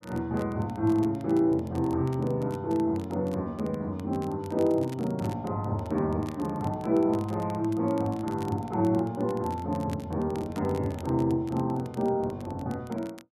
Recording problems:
crackling; vinyl, SNR 24 dB

